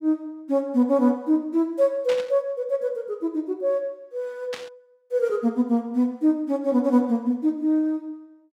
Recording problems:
static burst; at 2 s and at 4.5 s; peak -7 dB vs average level

